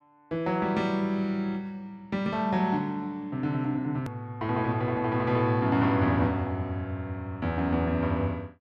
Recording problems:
click at an edit; at 4 s

